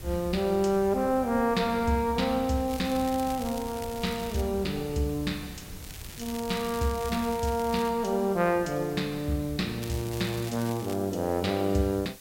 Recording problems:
hiss; slope +1 dB per octave, SNR 20 dB
wind on the microphone; below 210 Hz, SNR 18 dB
crackle; from 2.5 to 4.5 s, from 6 to 8 s and from 10 to 11 s; loose cable, SNR 16 dB

